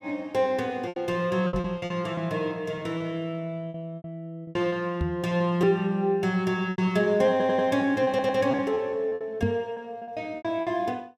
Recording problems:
lost packets; 11% of the sound replaced, filled with repeated pitch periods
microphone thump; at 1.5 s, at 5 s and at 9.5 s; peak +4 dB vs average level
stutter; at 7.5 s and at 8 s

